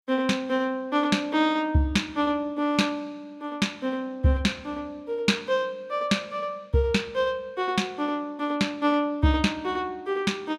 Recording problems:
none

